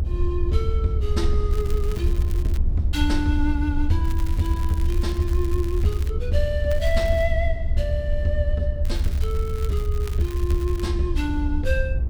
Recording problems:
rumble; below 78 Hz, SNR -2 dB
crackle; 4 times, first at 1.5 s; loose cable, SNR 17 dB

